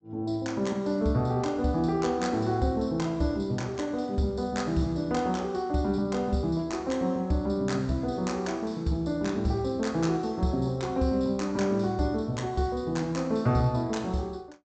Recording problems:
low-pass filter; nothing above 8 kHz

